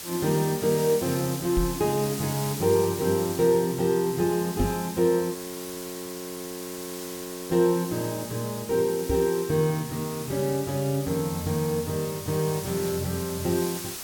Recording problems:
hiss; slope 0 dB per octave, SNR 10 dB
microphone bump; at 1.5 s, at 4.5 s and at 9 s; peak +2 dB vs average level
frozen audio; at 5.5 s for 2 s

